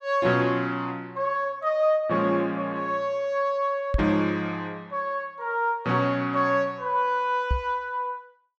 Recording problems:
microphone thump; at 4 s and at 7.5 s; peak +4 dB vs average level

